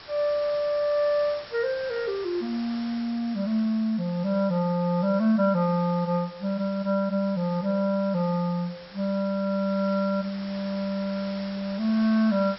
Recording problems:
treble cut off; nothing above 5.5 kHz
hiss; slope -1 dB per octave, SNR 18 dB

